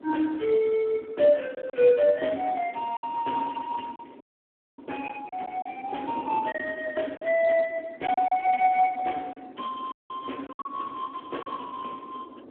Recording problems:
telephone audio; 240 Hz to 2.8 kHz, Speex
wind on the microphone; below 490 Hz, SNR 18 dB
packet loss; 5% of the sound replaced, filled with silence
dropout; at 4 s for 0.5 s and at 10 s

